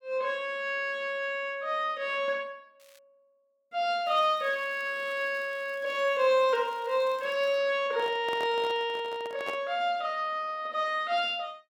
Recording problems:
crackle; at 3 s and from 4 to 7.5 s; loose cable, SNR 28 dB
handling noise; from 8 to 9.5 s; peak -6 dB vs average level

